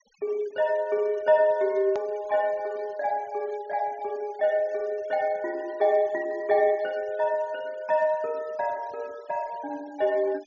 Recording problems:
treble cut off; nothing above 6.9 kHz
noise reduction artefacts; signal-to-artefact ratio 26 dB
click at an edit; at 2 s

